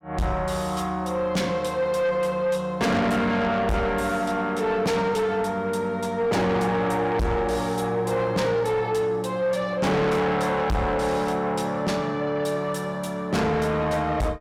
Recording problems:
distortion; soft clipping, signal-to-distortion ratio 6 dB

